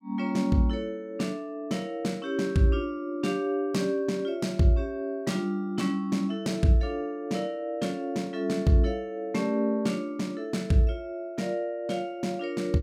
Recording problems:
none

